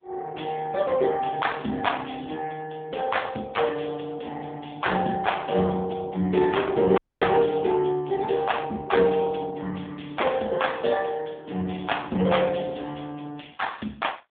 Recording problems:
phone line; 150 Hz to 3.5 kHz, AMR-NB
dropout; at 7 s

